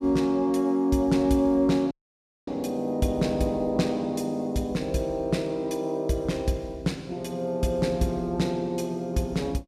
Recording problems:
dropout; at 2 s for 0.5 s

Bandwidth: 15.5 kHz